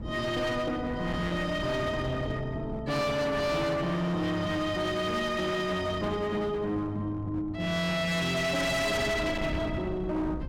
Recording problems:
distortion; hard clipping, uneven, signal-to-distortion ratio 8 dB
wind on the microphone; below 310 Hz, SNR 11 dB

